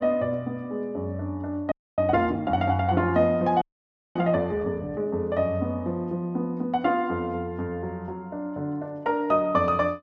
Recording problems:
audio freezing; at 1.5 s and at 3.5 s for 0.5 s

